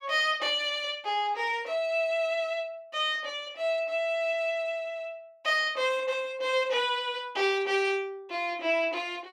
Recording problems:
none

